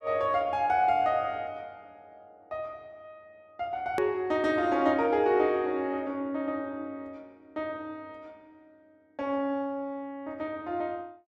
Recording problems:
hard cut with a click; at 4 s

